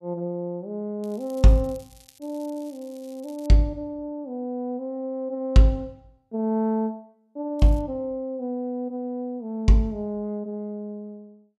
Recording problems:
crackling; from 1 to 3.5 s and at 7.5 s; loose cable, SNR 27 dB

